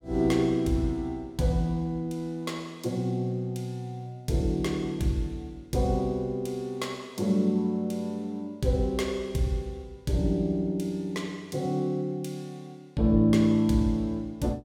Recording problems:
none

